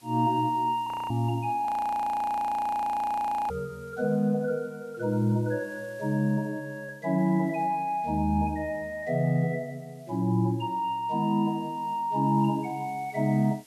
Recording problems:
background hiss; SNR 29 dB
frozen audio; at 1 s and at 1.5 s for 2 s

